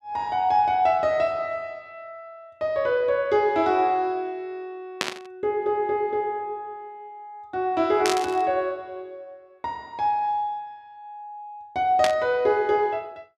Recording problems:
burst of static; at 5 s, at 8 s and at 12 s; peak +4 dB vs average level

